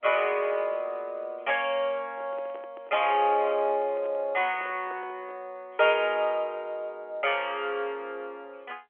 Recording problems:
phone line; 320 Hz to 3.3 kHz, G.711
microphone handling noise; from 2 to 5.5 s; peak -13 dB vs average level

